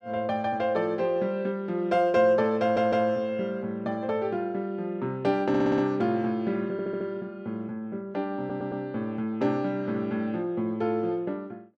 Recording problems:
audio stuttering; 4 times, first at 2.5 s

